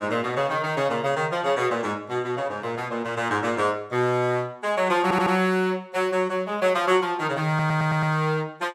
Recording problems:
audio stuttering; at 5 s and at 7.5 s

